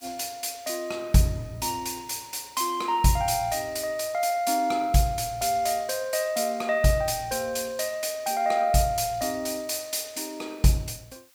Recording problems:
background hiss; slope +2 dB per octave, SNR 30 dB

